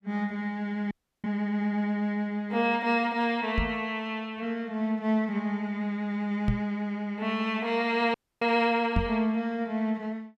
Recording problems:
frozen audio; at 1 s and at 8 s
knock on the microphone; at 3.5 s, at 6.5 s and at 9 s; peak +4 dB vs average level

